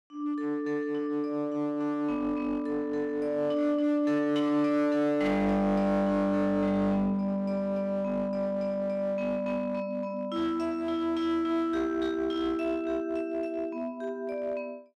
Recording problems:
distortion; hard clipping, uneven, signal-to-distortion ratio 10 dB

